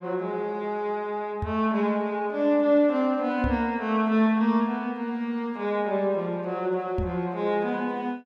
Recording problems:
microphone thump; at 1.5 s, at 3.5 s and at 7 s; peak 0 dB vs average level

